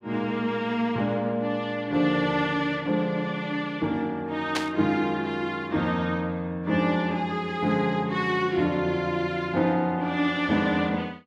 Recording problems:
static burst; at 4.5 s; peak +2 dB vs average level

